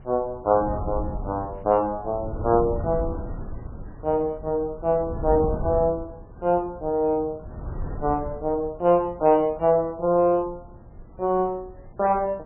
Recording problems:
codec artefacts; MP3, log-spectral distance 2 dB, nothing above 2.8 kHz
wind on the microphone; below 170 Hz, SNR 11 dB

